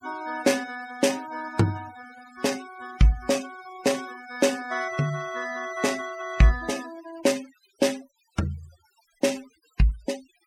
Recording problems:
denoising artefacts; signal-to-artefact ratio 18 dB

